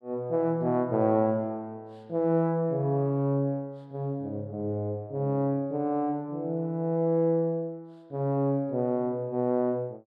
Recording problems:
none

